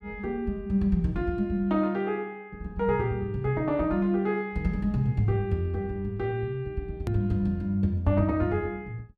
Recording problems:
hard cut with a click; at 7 s

